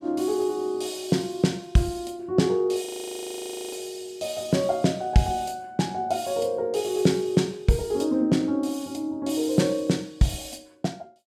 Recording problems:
frozen audio; at 3 s for 1 s

